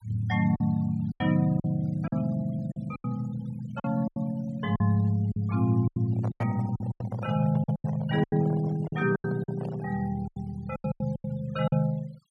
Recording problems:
noise reduction artefacts; signal-to-artefact ratio 23 dB
lost packets; 13% of the sound replaced, filled with silence
handling noise; from 6 to 10 s; peak -5 dB vs average level

